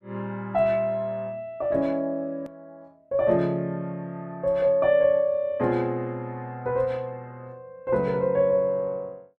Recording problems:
hard cut with a click; at 2.5 s

